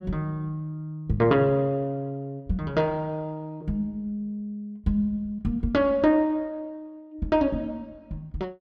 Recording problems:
none

